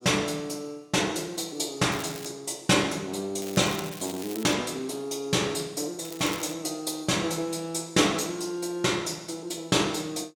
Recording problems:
crackle; at 2 s, from 3.5 to 4.5 s and at 6 s; loose cable, SNR 14 dB

